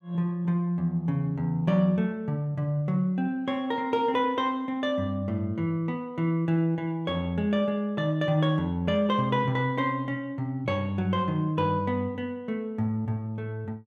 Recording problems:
none

